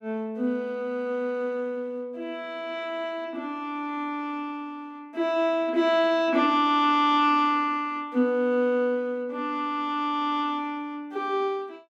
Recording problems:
none

